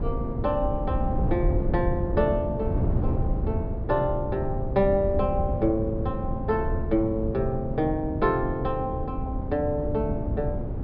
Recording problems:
treble missing; nothing above 5.3 kHz
wind on the microphone; below 160 Hz, SNR 3 dB

